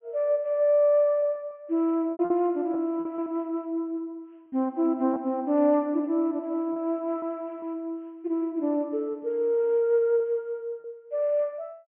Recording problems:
treble missing; nothing above 3.2 kHz
lost packets; 4% of the sound replaced, filled with repeated pitch periods

